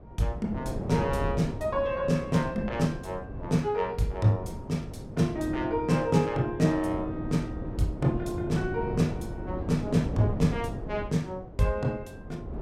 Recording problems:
wind on the microphone; below 330 Hz, SNR 8 dB

